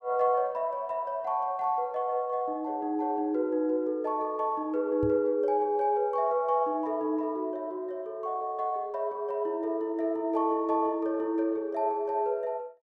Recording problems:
knock on the microphone; at 5 s; peak -3 dB vs average level

